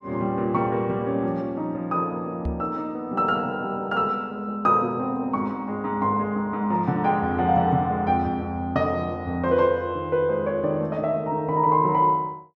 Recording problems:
microphone bump; at 2.5 s; peak -2 dB vs average level

